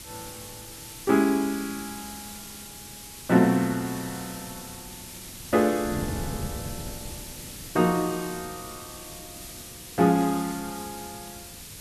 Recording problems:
background hiss; slope +1 dB per octave, SNR 13 dB
wind on the microphone; below 240 Hz, SNR 18 dB

